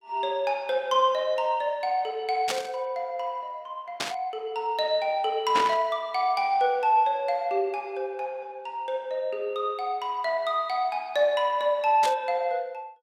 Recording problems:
static burst; 4 times, first at 2.5 s; peak +2 dB vs average level

